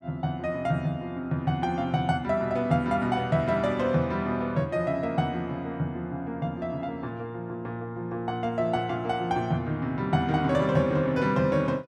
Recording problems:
none

